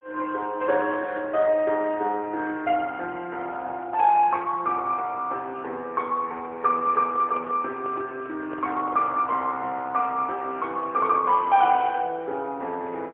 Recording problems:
phone line; 280 Hz to 3 kHz, AMR-NB, then MP3
microphone handling noise; from 6.5 to 9.5 s; peak -9 dB vs average level

